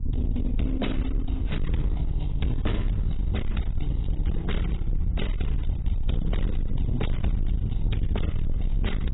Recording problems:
lossy codec; AAC, then AAC, log-spectral distance 2 dB, nothing above 3.9 kHz
distorted audio; soft clipping, signal-to-distortion ratio 7 dB
rumble; below 80 Hz, SNR -2 dB

